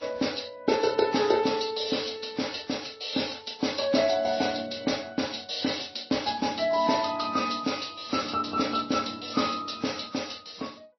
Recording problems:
lossy codec; MP3, then Vorbis, log-spectral distance 9 dB, nothing above 5.8 kHz

